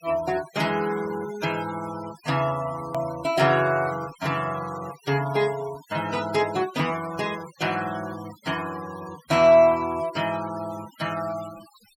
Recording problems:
noise reduction artefacts; signal-to-artefact ratio 18 dB
hard cut with a click; at 3 s

